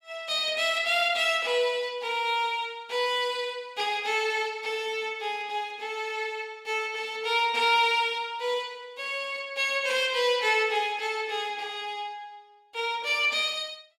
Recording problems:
none

